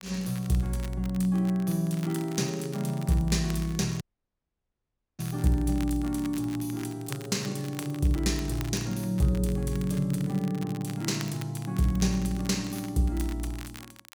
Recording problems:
crackle; vinyl, SNR 18 dB
dropout; at 4 s for 1 s

